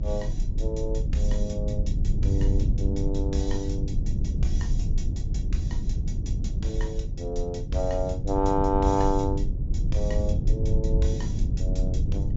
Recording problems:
treble missing; nothing above 7.4 kHz
rumble; below 92 Hz, SNR -2 dB

